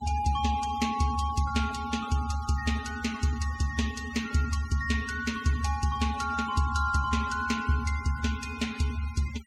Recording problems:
denoising artefacts; signal-to-artefact ratio 15 dB

